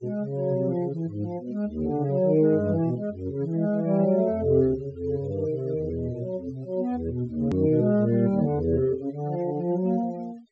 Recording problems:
low-pass filter; nothing above 8 kHz
noise reduction artefacts; signal-to-artefact ratio 25 dB
click at an edit; at 7.5 s

